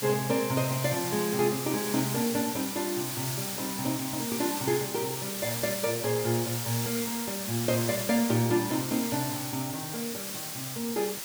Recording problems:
hiss; slope +1 dB per octave, SNR 3 dB

